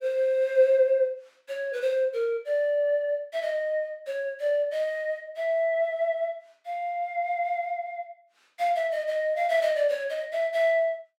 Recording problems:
none

